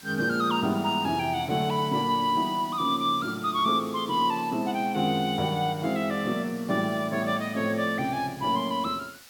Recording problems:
hiss; slope +1 dB per octave, SNR 20 dB

